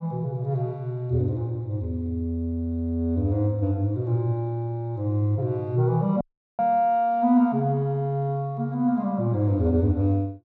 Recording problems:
audio cutting out; at 6 s

